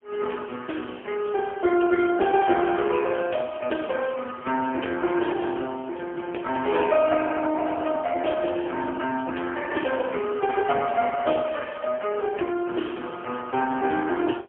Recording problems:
phone line; 260 Hz to 3.2 kHz, AMR-NB, then MP3

